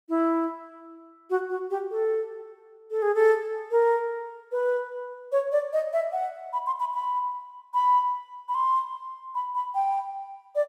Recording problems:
none

